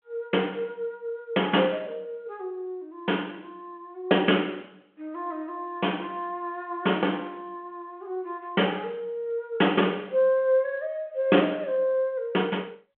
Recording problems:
phone line; 190 Hz to 3.4 kHz, G.726

